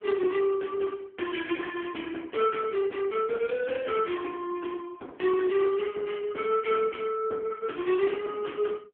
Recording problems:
telephone audio; 280 Hz to 3.1 kHz, AMR-NB

